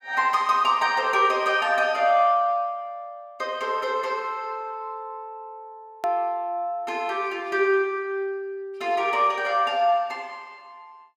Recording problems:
edit click; at 6 s

